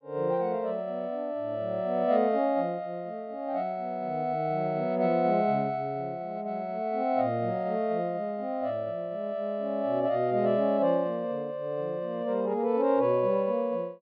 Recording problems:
low-pass filter; nothing above 5.5 kHz

